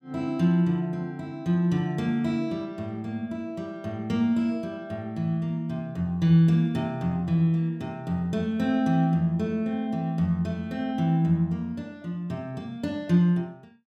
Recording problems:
none

